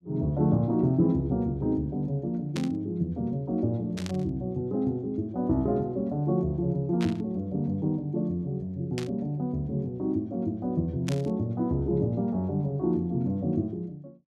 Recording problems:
static burst; 5 times, first at 2.5 s; peak -4 dB vs average level

